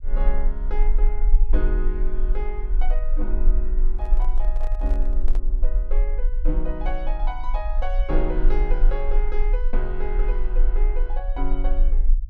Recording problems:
low-frequency rumble; below 34 Hz, strongest tone 18 Hz, SNR -9 dB
handling noise; from 4 to 5.5 s; peak -4 dB vs average level

